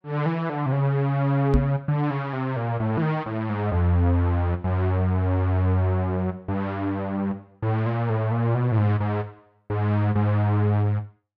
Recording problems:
microphone thump; at 1.5 s; peak +6 dB vs average level

